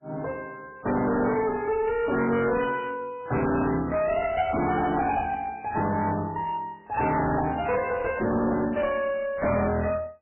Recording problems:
lossy codec; MP3, log-spectral distance 4 dB, nothing above 2.7 kHz
distorted audio; hard clipping, uneven, signal-to-distortion ratio 7 dB

